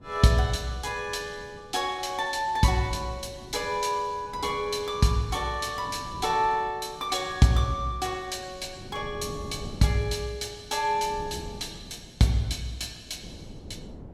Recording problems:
wind on the microphone; below 290 Hz, SNR 17 dB

